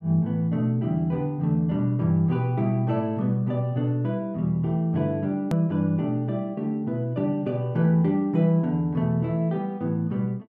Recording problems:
click at an edit; at 5.5 s

